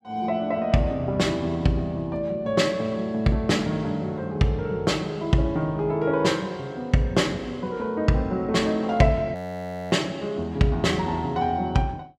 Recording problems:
audio freezing; at 9.5 s for 0.5 s

